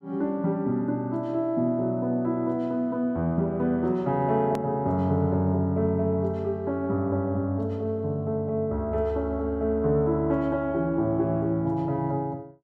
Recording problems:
click at an edit; at 4.5 s

